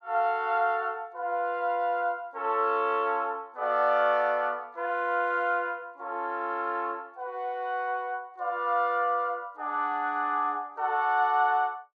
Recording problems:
none

